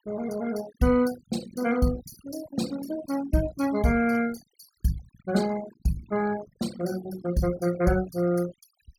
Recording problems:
noise reduction artefacts; signal-to-artefact ratio 15 dB

